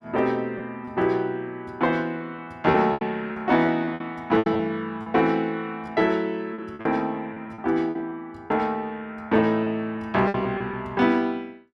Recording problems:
packet loss; 9% of the sound replaced, filled with repeated pitch periods

